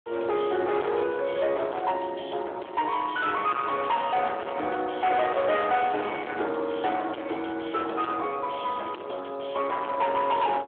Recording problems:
phone line; 300 Hz to 3.4 kHz, Speex
distorted audio; soft clipping, signal-to-distortion ratio 6 dB

